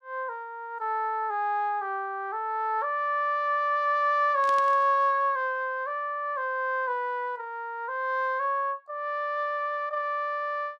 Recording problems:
static burst; at 4.5 s; peak -10 dB vs average level

